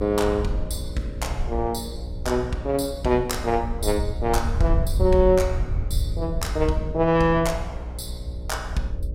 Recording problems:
electrical hum; 60 Hz, harmonics up to 600 Hz, SNR 13 dB
wind on the microphone; below 82 Hz, SNR 6 dB

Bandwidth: 16 kHz